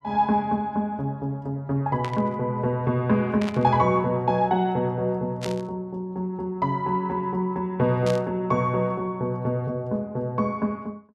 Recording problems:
burst of static; 4 times, first at 2 s; peak -5 dB vs average level

